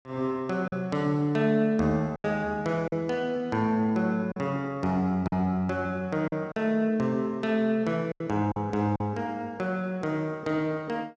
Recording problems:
lost packets; 4% of the sound replaced, filled with silence

